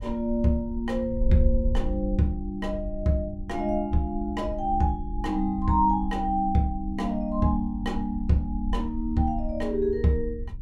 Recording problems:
wind on the microphone; below 60 Hz, SNR 8 dB

